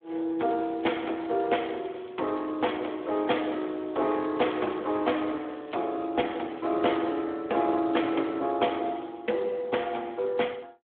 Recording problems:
telephone audio; 260 Hz to 3.4 kHz, Speex
crackle; from 0.5 to 2.5 s and from 3 to 7 s; loose cable, SNR 27 dB

